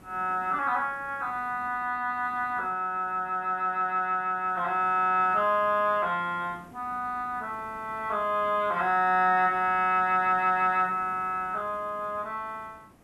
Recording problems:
hiss; slope -7 dB per octave, SNR 26 dB

